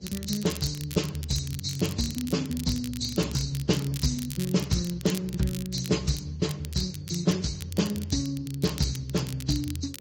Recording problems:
lossy codec; Speex, then Vorbis, log-spectral distance 5 dB
electrical hum; 50 Hz, harmonics up to 600 Hz, SNR 27 dB
crackle; vinyl, SNR 13 dB

